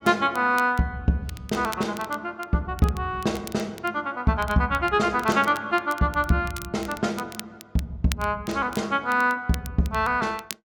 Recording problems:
crackling; vinyl, SNR 18 dB

